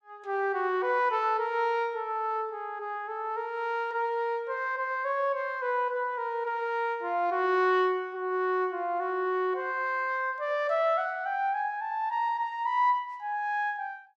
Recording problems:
none

